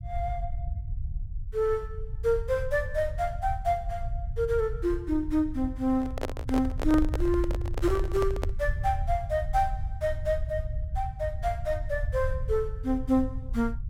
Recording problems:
rumble; below 78 Hz, SNR 5 dB
handling noise; from 6 to 8.5 s; peak +2 dB vs average level

